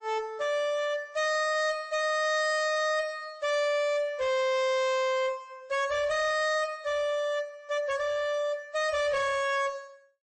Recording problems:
codec artefacts; MP3, log-spectral distance 2 dB, nothing above 8.2 kHz
distortion; hard clipping, signal-to-distortion ratio 6 dB

